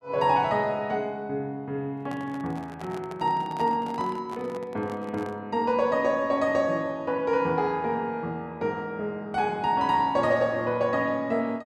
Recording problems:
microphone handling noise; from 2 to 5.5 s; peak -9 dB vs average level

